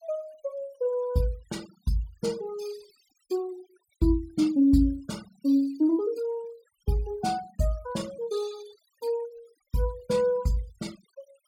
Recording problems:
denoising artefacts; signal-to-artefact ratio 21 dB

